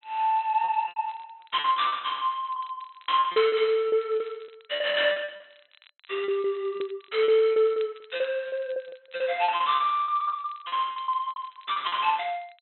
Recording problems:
treble missing; nothing above 4.1 kHz
crackle; vinyl, SNR 28 dB
lost packets; 17% of the sound replaced, filled with repeated pitch periods

